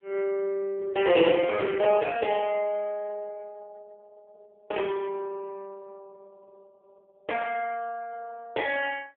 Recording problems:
phone line; 280 Hz to 3.3 kHz, AMR-NB

